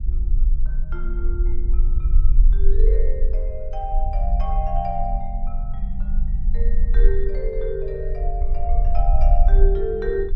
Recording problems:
rumble; below 42 Hz, strongest tone 18 Hz, SNR -7 dB

